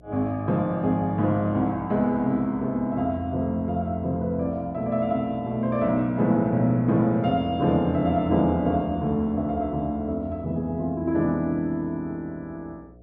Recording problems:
electrical hum; 60 Hz, harmonics up to 720 Hz, SNR 26 dB

